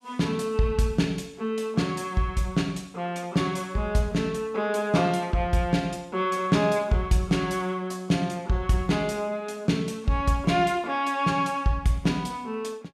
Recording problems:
none

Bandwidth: 13.5 kHz